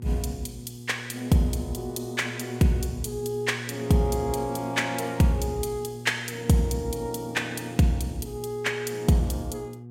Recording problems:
electrical hum; 60 Hz, harmonics up to 720 Hz, SNR 13 dB

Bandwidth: 16 kHz